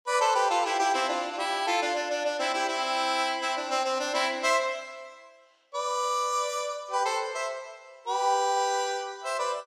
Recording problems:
none

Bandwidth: 14.5 kHz